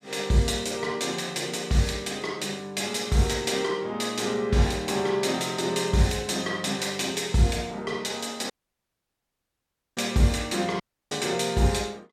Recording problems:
audio cutting out; at 8.5 s for 1.5 s and at 11 s

